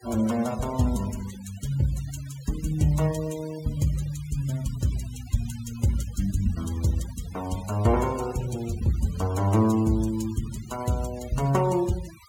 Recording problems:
noise reduction artefacts; signal-to-artefact ratio 18 dB

